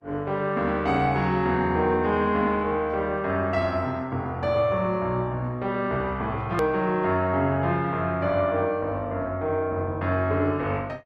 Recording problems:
lossy compression; Opus, log-spectral distance 2 dB, nothing above 13.1 kHz
hard cut with a click; at 6.5 s

